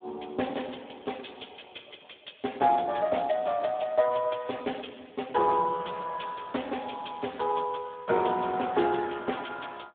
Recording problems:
telephone audio; 220 Hz to 3.6 kHz, Speex

